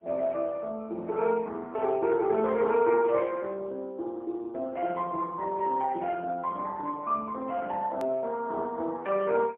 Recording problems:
telephone audio; 240 Hz to 3.6 kHz, AMR-NB, then MP3
click at an edit; at 8 s

